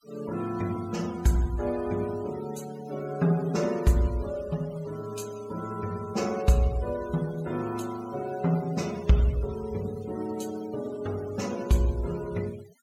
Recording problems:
denoising artefacts; signal-to-artefact ratio 19 dB

